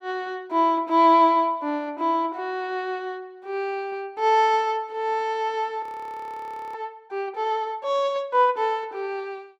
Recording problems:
frozen audio; at 6 s for 1 s

